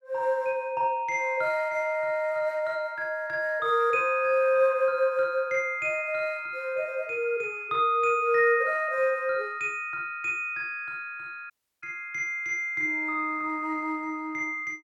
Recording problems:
dropout; at 12 s

